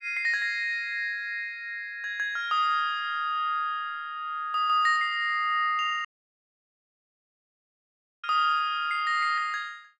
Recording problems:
audio cutting out; at 6 s for 2 s

